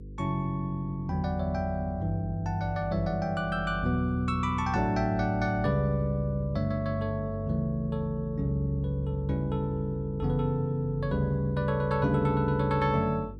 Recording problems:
hum; 50 Hz, harmonics up to 500 Hz, SNR 14 dB

